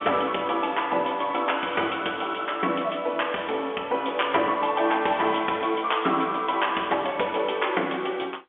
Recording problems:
phone line; 280 Hz to 3.5 kHz, G.711

